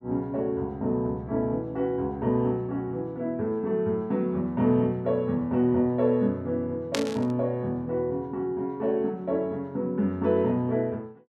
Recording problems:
burst of static; at 7 s; peak +2 dB vs average level

